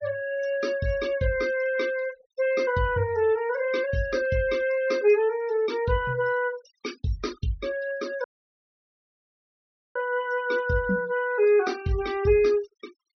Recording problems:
treble cut off; nothing above 6.2 kHz
denoising artefacts; signal-to-artefact ratio 19 dB
audio cutting out; at 8 s for 1.5 s

